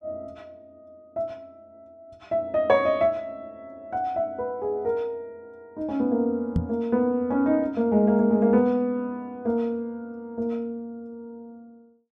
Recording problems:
knock on the microphone; at 6.5 s; peak +4 dB vs average level

